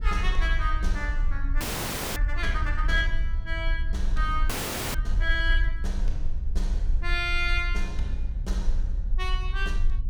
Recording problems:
rumble; below 50 Hz, SNR -1 dB
frozen audio; at 1.5 s for 0.5 s and at 4.5 s

